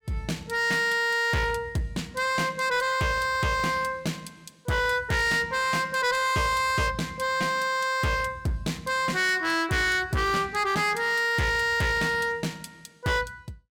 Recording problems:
distorted audio; hard clipping, uneven, signal-to-distortion ratio 7 dB

